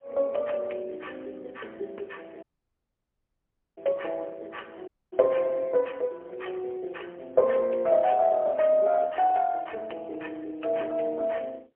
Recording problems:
phone line; 320 Hz to 3.1 kHz, AMR-NB, then MP3
dropout; at 2.5 s for 1.5 s and at 5 s

